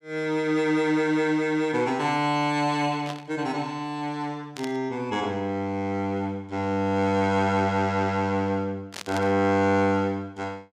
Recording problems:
burst of static; at 3 s, at 4.5 s and at 9 s; peak -6 dB vs average level

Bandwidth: 15.5 kHz